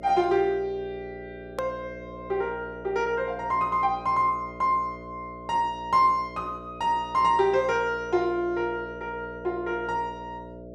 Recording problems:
electrical hum; 60 Hz, harmonics up to 660 Hz, SNR 16 dB
edit click; at 1.5 s

